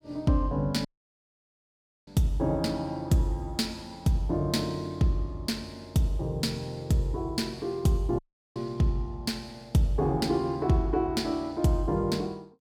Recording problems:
dropout; at 1 s for 1 s and at 8 s

